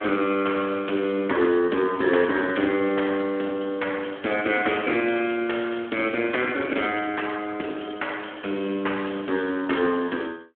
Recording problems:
telephone audio; 220 Hz to 3.3 kHz, Speex

